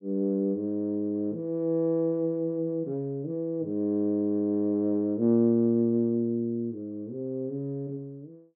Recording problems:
treble missing; nothing above 5.2 kHz

